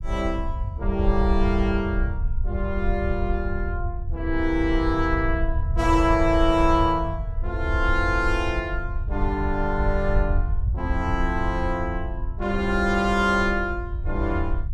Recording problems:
low-frequency rumble; below 72 Hz, SNR 4 dB

